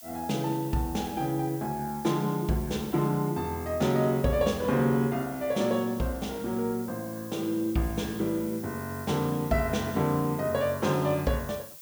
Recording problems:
hiss; slope +3 dB per octave, SNR 16 dB

